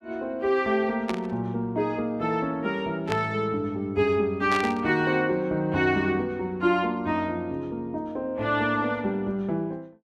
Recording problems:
static burst; at 1 s, at 3 s and at 4.5 s; peak -1 dB vs average level

